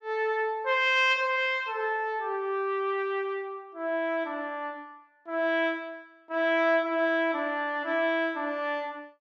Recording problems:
none

